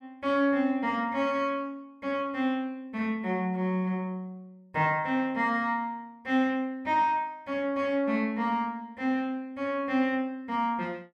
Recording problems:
none

